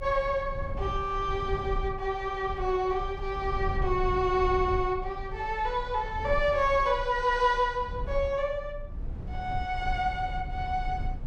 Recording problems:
rumble; below 80 Hz, strongest tone 28 Hz, SNR 9 dB

